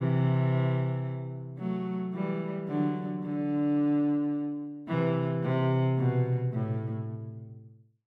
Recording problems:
none

